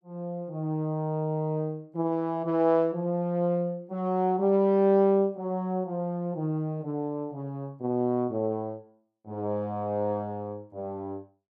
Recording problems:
none

